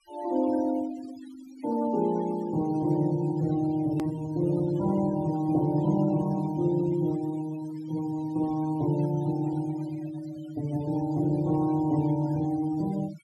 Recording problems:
noise reduction artefacts; signal-to-artefact ratio 18 dB
click at an edit; at 4 s

